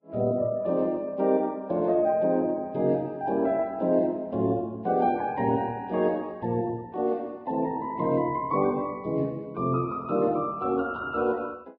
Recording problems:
lossy compression; Vorbis, log-spectral distance 2 dB

